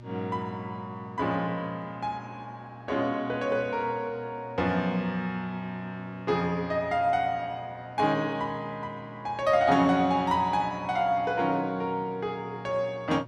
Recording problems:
hum; 60 Hz, harmonics up to 1.2 kHz, SNR 19 dB

